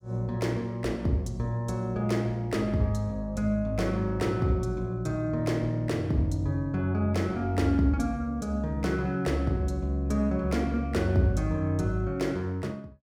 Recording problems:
none

